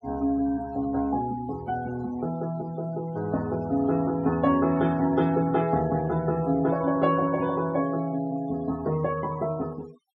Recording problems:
denoising artefacts; signal-to-artefact ratio 20 dB

